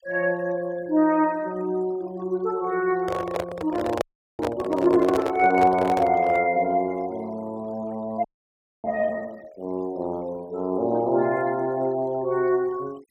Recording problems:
noise reduction artefacts; signal-to-artefact ratio 25 dB
microphone handling noise; from 3 to 6.5 s; peak +3 dB vs average level
audio freezing; at 4 s and at 8 s for 0.5 s

